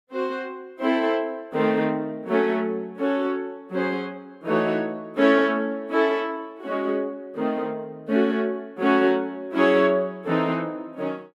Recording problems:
none

